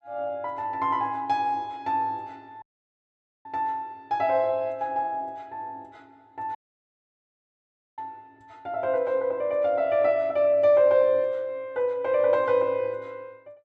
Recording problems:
dropout; at 2.5 s for 1 s and at 6.5 s for 1.5 s

